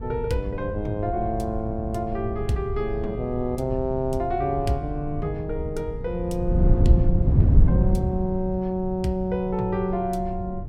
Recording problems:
wind on the microphone; below 130 Hz, SNR 0 dB

